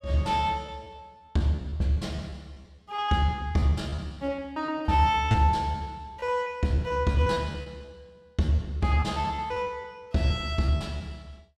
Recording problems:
packet loss; 14% of the sound replaced, filled with repeated pitch periods

